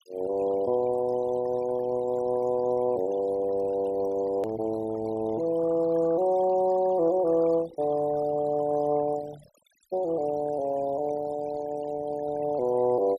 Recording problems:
denoising artefacts; signal-to-artefact ratio 19 dB
edit click; at 4.5 s

